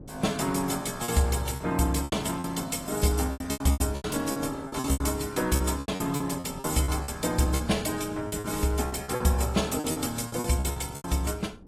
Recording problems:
lossy codec; AAC, log-spectral distance 5 dB
wind noise; below 310 Hz, SNR 18 dB
packet loss; 14% of the sound replaced, filled with repeated pitch periods

